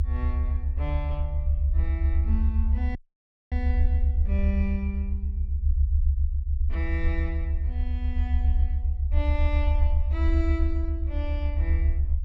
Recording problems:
rumble; below 74 Hz, SNR -10 dB
dropout; at 3 s for 0.5 s

